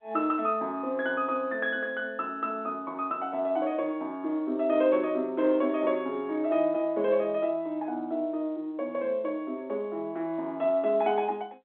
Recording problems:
phone line; 220 Hz to 3.6 kHz, G.711

